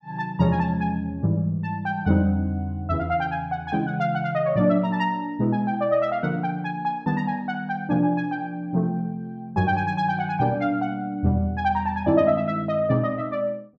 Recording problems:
none

